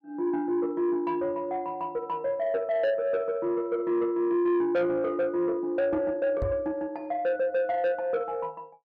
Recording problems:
distorted audio; soft clipping, signal-to-distortion ratio 12 dB
microphone bump; at 6.5 s; peak 0 dB vs average level

